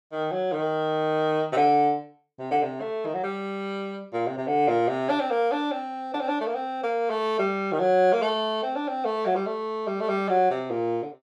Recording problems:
none

